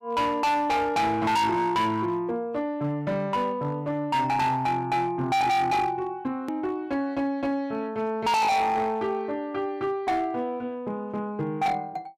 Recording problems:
distortion; hard clipping, uneven, signal-to-distortion ratio 6 dB
click at an edit; at 6.5 s

